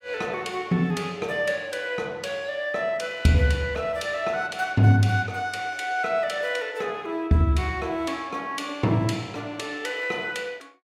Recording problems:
none

